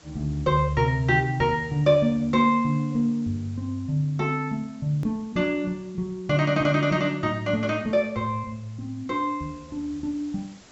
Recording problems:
treble missing; nothing above 7.8 kHz
hiss; slope -2 dB per octave, SNR 28 dB
hard cut with a click; at 5 s

